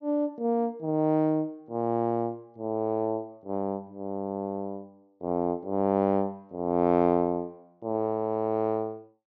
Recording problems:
treble cut off; nothing above 6.3 kHz

